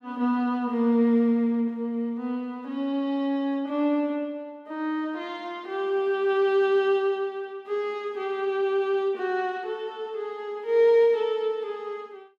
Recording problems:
none

